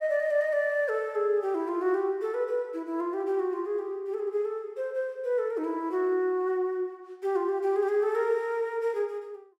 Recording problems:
none

